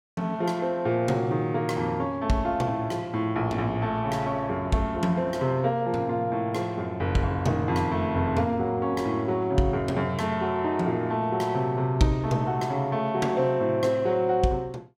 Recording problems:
none

